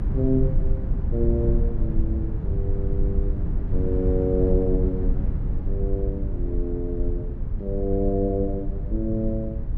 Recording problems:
rumble; below 84 Hz, SNR -1 dB

